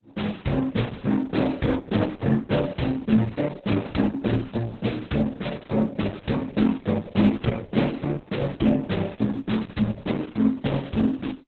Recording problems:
codec artefacts; Opus, then Opus, log-spectral distance 5 dB

